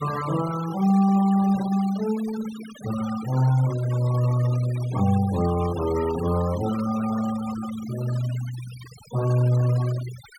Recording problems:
noise reduction artefacts; signal-to-artefact ratio 16 dB

